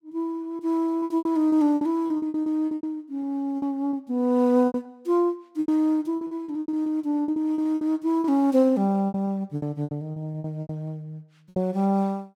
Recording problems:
packet loss; 17% of the sound replaced, filled with repeated pitch periods

